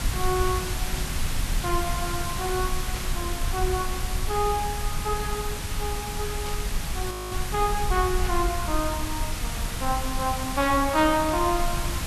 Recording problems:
hiss; slope -1 dB per octave, SNR 4 dB
low-frequency rumble; below 64 Hz, SNR 5 dB
static burst; 4 times, first at 1 s; peak -6 dB vs average level
frozen audio; at 7 s

